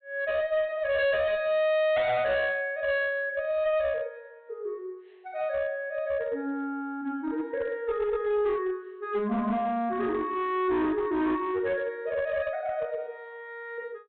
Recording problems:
low-pass filter; nothing above 4 kHz
distorted audio; hard clipping, uneven, signal-to-distortion ratio 10 dB

